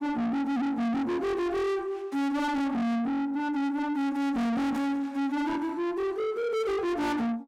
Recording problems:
distortion; soft clipping, signal-to-distortion ratio 6 dB

